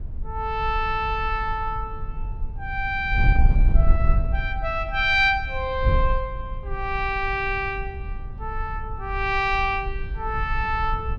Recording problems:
wind on the microphone; below 64 Hz, SNR 4 dB

